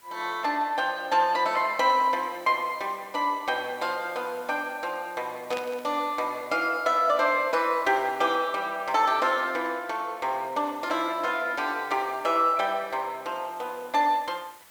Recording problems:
hiss; SNR 25 dB
burst of static; at 5.5 s; peak -7 dB vs average level

